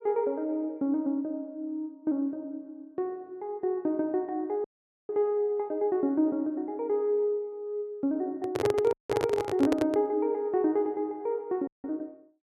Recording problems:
dropout; at 4.5 s, at 9 s and at 12 s
microphone handling noise; from 8.5 to 10 s; peak +4 dB vs average level

